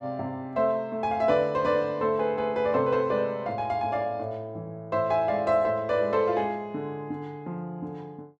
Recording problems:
none

